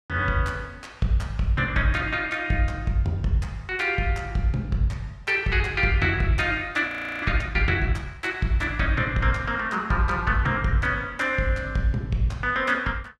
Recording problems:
frozen audio; at 7 s

